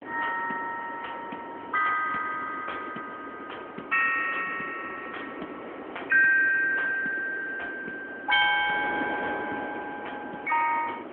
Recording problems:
phone line; 240 Hz to 3.6 kHz, AMR-NB
wind on the microphone; below 860 Hz, SNR 13 dB

